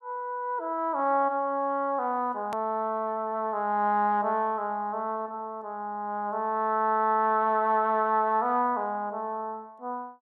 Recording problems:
click at an edit; at 2.5 s

